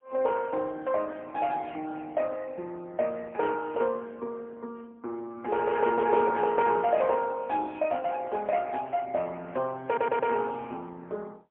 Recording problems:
phone line; 260 Hz to 3.3 kHz, AMR-NB, then MP3
stutter; at 10 s

